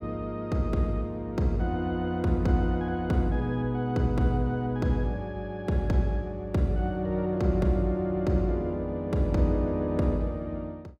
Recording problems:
none

